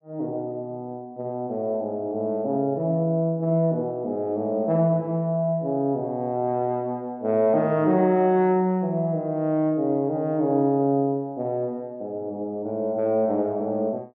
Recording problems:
none

